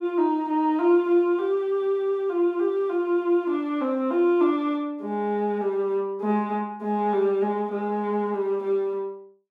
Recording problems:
none

